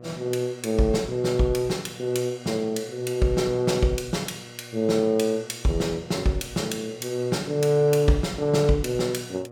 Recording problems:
electrical hum; 60 Hz, harmonics up to 1.3 kHz, SNR 20 dB

